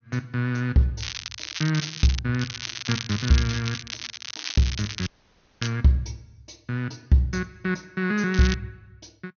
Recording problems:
treble missing; nothing above 6.5 kHz
crackle; from 1 to 2 s, from 2.5 to 5.5 s and at 8.5 s; loose cable, SNR 8 dB
dropout; at 5 s for 0.5 s

